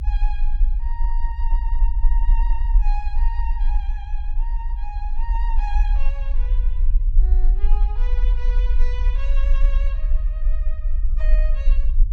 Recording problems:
rumble; below 42 Hz, strongest tone 26 Hz, SNR -16 dB

